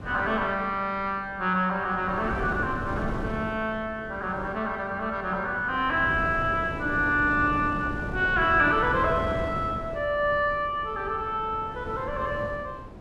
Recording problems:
wind on the microphone; below 460 Hz, SNR 10 dB

